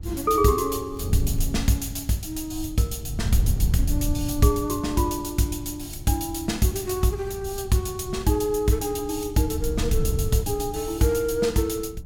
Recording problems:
wind on the microphone; below 110 Hz, SNR 7 dB
crackle; at 1 s; loose cable, SNR 30 dB

